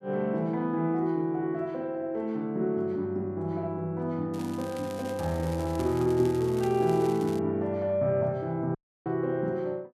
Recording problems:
crackle; from 4.5 to 7.5 s; loose cable, SNR 19 dB
dropout; at 9 s

